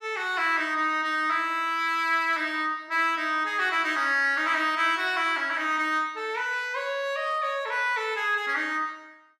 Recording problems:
none

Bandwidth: 14 kHz